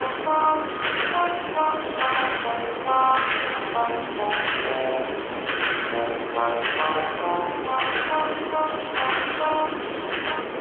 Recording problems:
telephone audio; 280 Hz to 3.2 kHz, AMR-NB
distortion; soft clipping, signal-to-distortion ratio 11 dB
background hiss; SNR 6 dB

